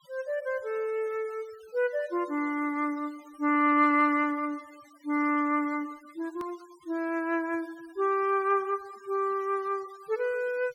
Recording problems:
noise reduction artefacts; signal-to-artefact ratio 27 dB
edit click; at 6.5 s

